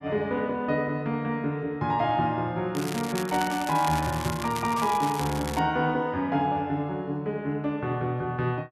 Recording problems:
crackle; from 3 to 5.5 s; loose cable, SNR 10 dB

